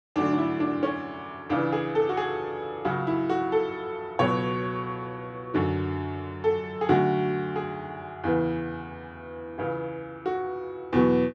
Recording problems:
none

